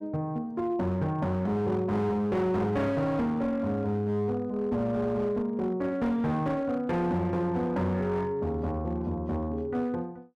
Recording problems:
distortion; hard clipping, signal-to-distortion ratio 11 dB

